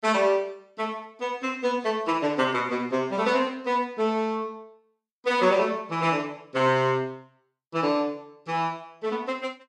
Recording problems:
none

